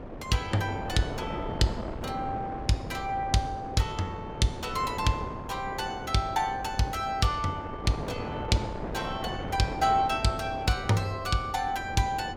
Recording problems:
wind noise; below 630 Hz, SNR 8 dB

